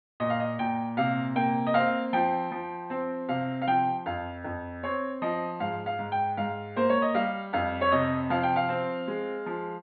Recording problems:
treble cut off; nothing above 4.4 kHz

